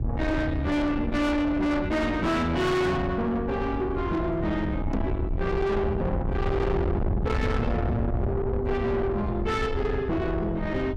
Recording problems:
distorted audio; soft clipping, signal-to-distortion ratio 7 dB
rumble; below 310 Hz, SNR 4 dB
microphone thump; at 5 s; peak +3 dB vs average level

